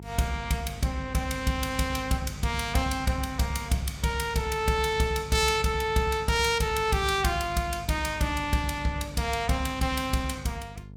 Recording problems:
electrical hum; 50 Hz, harmonics up to 500 Hz, SNR 17 dB

